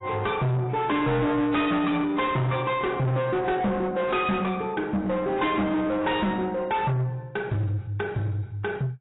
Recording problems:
lossy codec; AAC, log-spectral distance 2 dB, nothing above 3.8 kHz
distortion; soft clipping, signal-to-distortion ratio 6 dB

